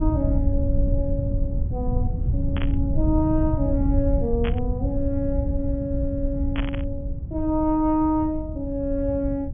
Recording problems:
low-pass filter; nothing above 3.4 kHz
rumble; below 100 Hz, SNR 1 dB
burst of static; at 2.5 s, at 4.5 s and at 6.5 s; peak -2 dB vs average level

